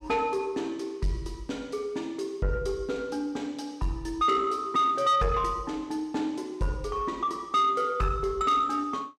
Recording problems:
distorted audio; soft clipping, signal-to-distortion ratio 11 dB

